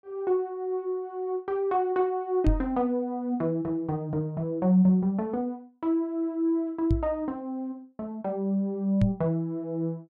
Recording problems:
microphone thump; at 2.5 s, at 7 s and at 9 s; peak +6 dB vs average level

